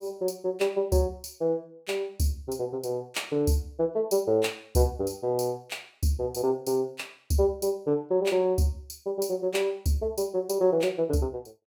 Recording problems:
none

